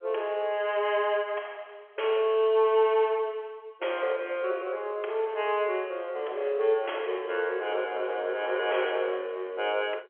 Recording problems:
telephone audio; 340 Hz to 3.3 kHz, G.711

